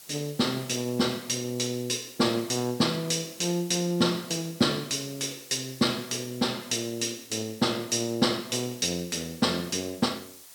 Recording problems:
hiss; slope +1 dB per octave, SNR 18 dB

